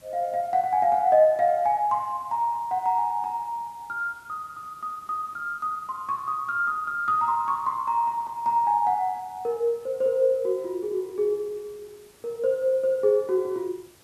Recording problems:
background hiss; slope -2 dB per octave, SNR 29 dB

